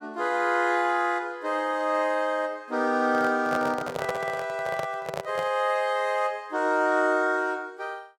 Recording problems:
handling noise; from 3 to 5.5 s; peak -1 dB vs average level

